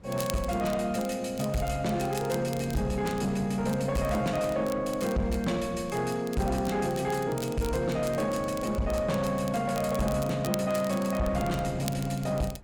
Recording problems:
distorted audio; soft clipping, signal-to-distortion ratio 11 dB
wind on the microphone; below 330 Hz, SNR 17 dB
crackling; vinyl, SNR 16 dB

